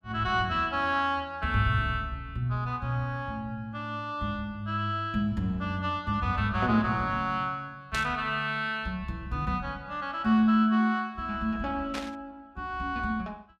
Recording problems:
static burst; at 8 s and at 12 s; peak -3 dB vs average level

